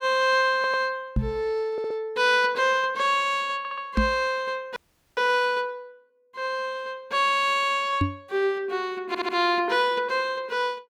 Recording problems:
stutter; 4 times, first at 0.5 s
microphone bump; at 1 s, at 4 s and at 8 s; peak +4 dB vs average level
audio freezing; at 5 s

